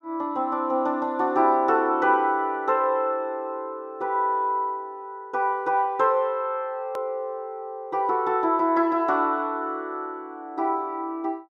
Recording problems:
hard cut with a click; at 7 s

